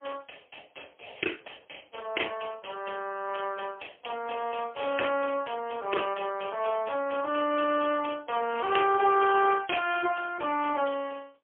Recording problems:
telephone audio; 280 Hz to 3.1 kHz, AMR-NB, then MP3

